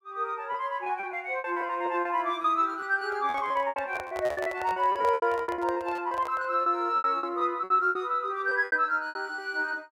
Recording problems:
packet loss; 16% of the sound replaced, filled with repeated pitch periods
microphone handling noise; from 3 to 6.5 s; peak -4 dB vs average level

